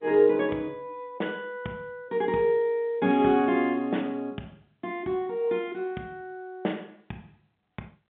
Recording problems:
phone line; 150 Hz to 3.6 kHz, G.711

